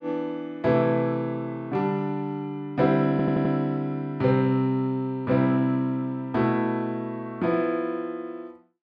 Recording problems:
audio stuttering; at 3 s

